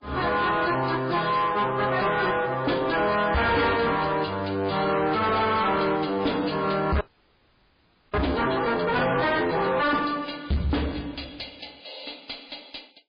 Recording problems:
lossy compression; MP3, log-spectral distance 6 dB, nothing above 4.8 kHz
distortion; soft clipping, signal-to-distortion ratio 7 dB
audio freezing; at 7 s for 1 s

